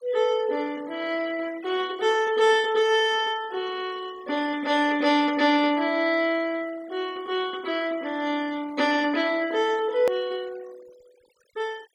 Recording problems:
noise reduction artefacts; signal-to-artefact ratio 23 dB
click at an edit; at 10 s

